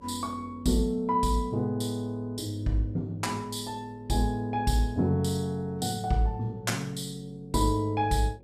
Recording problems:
electrical hum; 50 Hz, harmonics up to 550 Hz, SNR 26 dB

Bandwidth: 14.5 kHz